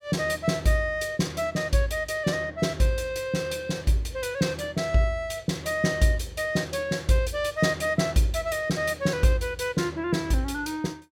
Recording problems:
none

